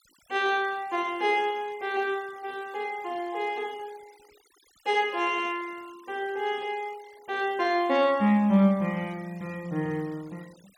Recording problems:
noise reduction artefacts; signal-to-artefact ratio 25 dB

